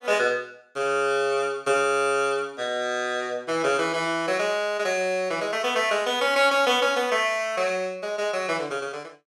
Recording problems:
none

